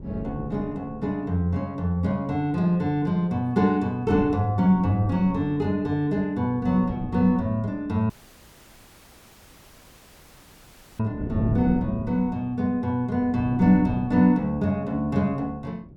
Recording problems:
wind noise; below 270 Hz, SNR 11 dB
audio cutting out; at 8 s for 3 s

